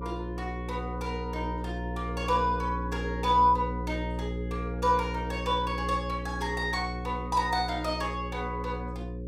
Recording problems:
electrical hum; 60 Hz, harmonics up to 540 Hz, SNR 5 dB

